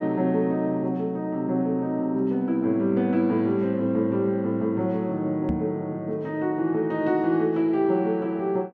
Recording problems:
microphone bump; at 5.5 s; peak -1 dB vs average level

